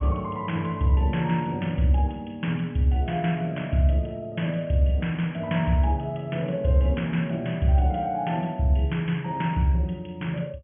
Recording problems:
treble cut off; nothing above 3.3 kHz

